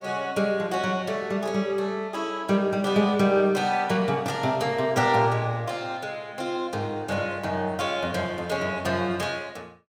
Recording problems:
none

